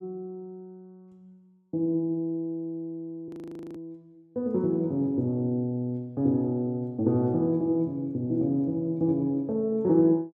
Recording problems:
audio freezing; at 3.5 s

